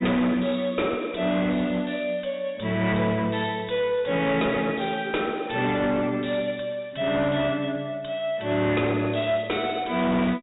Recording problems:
low-pass filter; nothing above 4 kHz
distortion; hard clipping, uneven, signal-to-distortion ratio 10 dB

